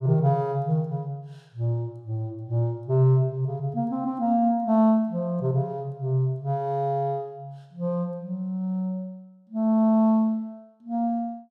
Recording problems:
none

